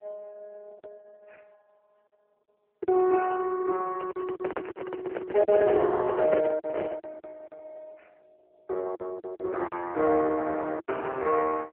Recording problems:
phone line; 300 Hz to 2.9 kHz, AMR-NB
packet loss; 7% of the sound replaced, filled with silence
microphone handling noise; from 4 to 7 s; peak +1 dB vs average level

